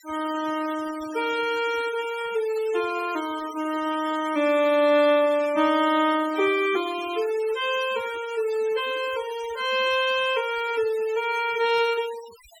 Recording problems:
denoising artefacts; signal-to-artefact ratio 17 dB

